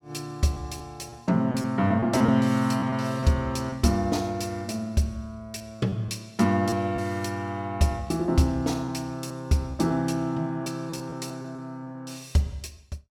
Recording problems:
lost packets; 5% of the sound replaced, filled with repeated pitch periods

